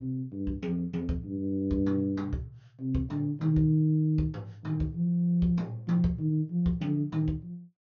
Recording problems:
low-pass filter; nothing above 6.8 kHz

